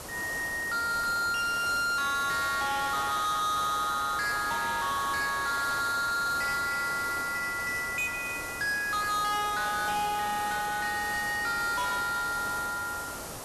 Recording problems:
distortion; soft clipping, signal-to-distortion ratio 8 dB
background hiss; SNR 10 dB

